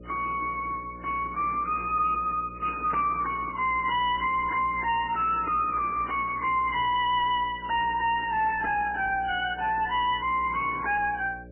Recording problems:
lossy compression; MP3, log-spectral distance 5 dB, nothing above 2.5 kHz
distortion; soft clipping, signal-to-distortion ratio 10 dB
electrical hum; 60 Hz, harmonics up to 600 Hz, SNR 20 dB

